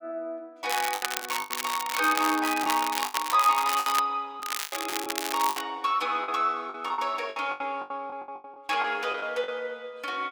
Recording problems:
packet loss; 11% of the sound replaced, filled with the last packet
crackling; from 0.5 to 4 s and from 4.5 to 5.5 s; loose cable, SNR 4 dB

